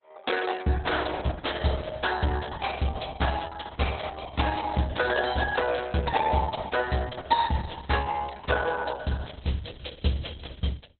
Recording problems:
lossy compression; Opus, log-spectral distance 7 dB, nothing above 4 kHz

